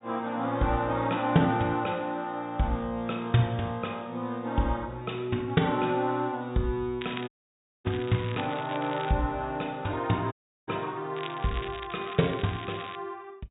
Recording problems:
low-pass filter; nothing above 4 kHz
crackling; from 7 to 9 s and from 11 to 13 s; loose cable, SNR 13 dB
audio cutting out; at 7.5 s for 0.5 s and at 10 s

